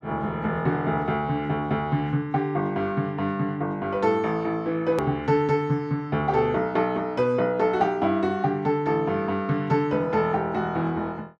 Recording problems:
click at an edit; at 5 s

